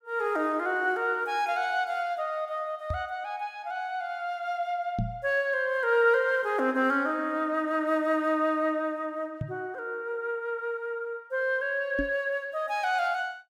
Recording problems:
microphone bump; 4 times, first at 3 s; peak +2 dB vs average level

